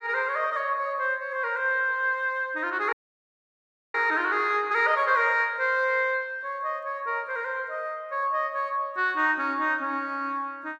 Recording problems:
dropout; at 3 s for 1 s

